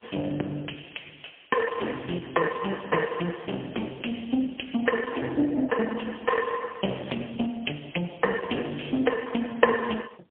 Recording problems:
phone line; 300 Hz to 3.3 kHz, AMR-NB, then MP3

